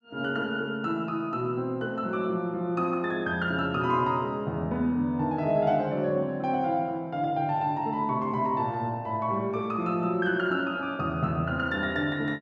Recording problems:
none

